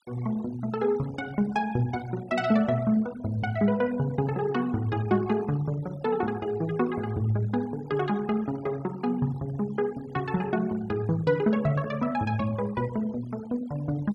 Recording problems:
noise reduction artefacts; signal-to-artefact ratio 21 dB

